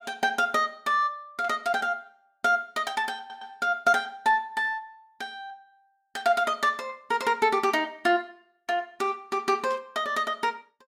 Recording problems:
burst of static; at 1.5 s and at 9.5 s; peak -14 dB vs average level
audio stuttering; at 3 s

